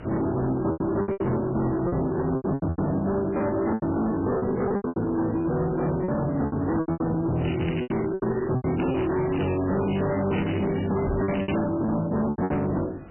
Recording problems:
lossy compression; MP3, log-spectral distance 8 dB, nothing above 2.4 kHz
distorted audio; hard clipping, uneven, signal-to-distortion ratio 7 dB
background hiss; SNR 17 dB
packet loss; 12% of the sound replaced, filled with repeated pitch periods
crackling; from 7.5 to 12 s; loose cable, SNR 13 dB
knock on the microphone; at 11 s; peak +1 dB vs average level

